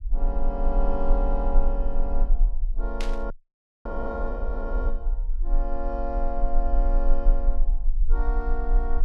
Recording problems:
rumble; below 36 Hz, strongest tone 26 Hz, SNR -5 dB
burst of static; at 3 s; peak +2 dB vs average level
frozen audio; at 3.5 s for 0.5 s

